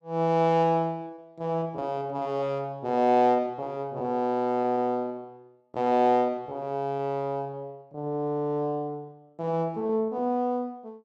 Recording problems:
lost packets; 18% of the sound replaced, filled with repeated pitch periods

